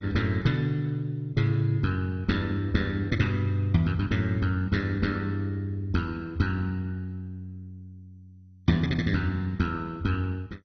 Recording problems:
lossy codec; MP2, log-spectral distance 2 dB, nothing above 6 kHz

